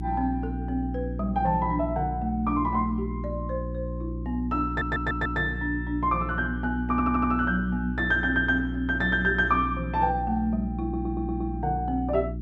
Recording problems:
electrical hum; 60 Hz, harmonics up to 360 Hz, SNR 6 dB
stutter; at 4.5 s, at 7 s and at 11 s

